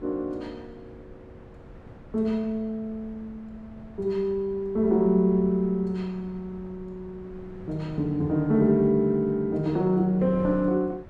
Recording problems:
wind on the microphone; below 330 Hz, SNR 22 dB

